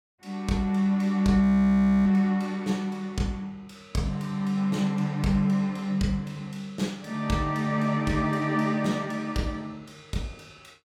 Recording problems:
frozen audio; at 1.5 s for 0.5 s

